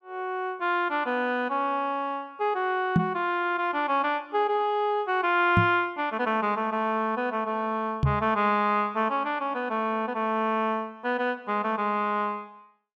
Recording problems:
microphone thump; at 3 s, at 5.5 s and at 8 s; peak +7 dB vs average level

